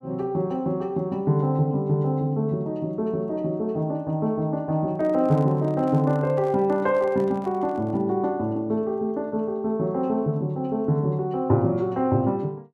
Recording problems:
packet loss; 0.3% of the sound replaced, filled with repeated pitch periods
microphone handling noise; from 5 to 8 s; peak -12 dB vs average level

